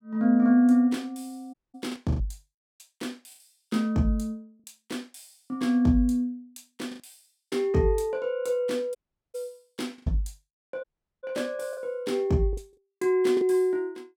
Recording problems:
packet loss; 4% of the sound replaced, filled with the last packet
audio cutting out; at 1.5 s, at 9 s and at 11 s

